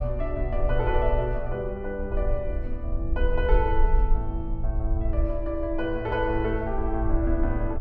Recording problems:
low-frequency rumble; below 52 Hz, SNR 1 dB

